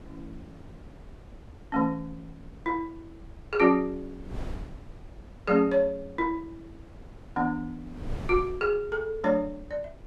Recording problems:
wind noise; below 200 Hz, SNR 17 dB

